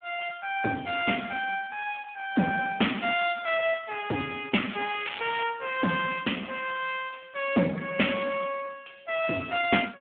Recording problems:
telephone audio; 170 Hz to 3.3 kHz, Speex
crackling; at 5 s; loose cable, SNR 9 dB

